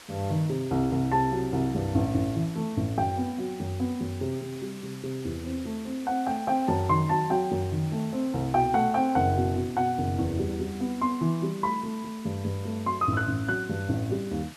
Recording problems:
background hiss; slope -1 dB per octave, SNR 19 dB

